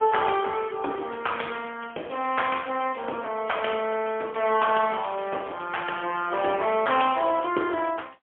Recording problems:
telephone audio; 280 Hz to 3.3 kHz, AMR-NB, then MP3

